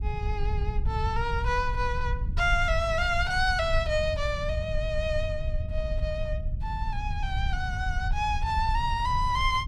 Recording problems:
low-frequency rumble; below 78 Hz, SNR 3 dB

